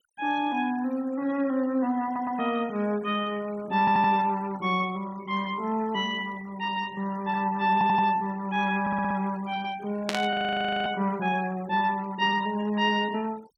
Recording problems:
denoising artefacts; signal-to-artefact ratio 21 dB
audio stuttering; 4 times, first at 2 s
static burst; at 10 s; peak +2 dB vs average level
audio freezing; at 10 s for 0.5 s

